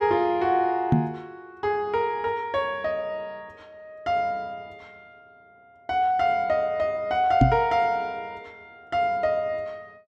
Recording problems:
knock on the microphone; at 1 s and at 7.5 s; peak +10 dB vs average level

